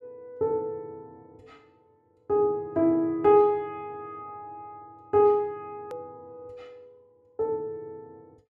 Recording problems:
hard cut with a click; at 6 s

